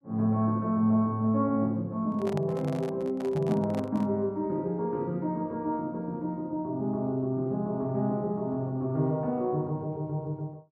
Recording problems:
microphone handling noise; from 2 to 4 s; peak -6 dB vs average level

